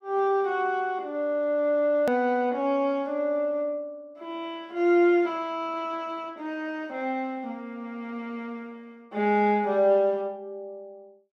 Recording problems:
edit click; at 2 s

